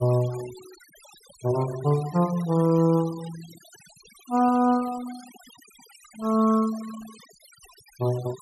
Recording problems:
noise reduction artefacts; signal-to-artefact ratio 21 dB

